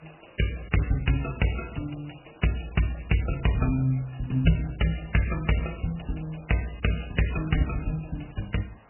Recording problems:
lossy compression; MP3, log-spectral distance 12 dB, nothing above 2.9 kHz
background hiss; SNR 27 dB

